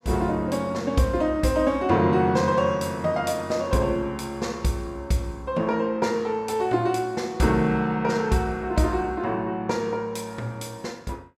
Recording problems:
none

